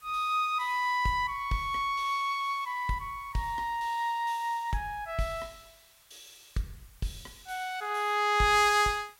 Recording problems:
hiss; SNR 28 dB

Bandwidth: 16 kHz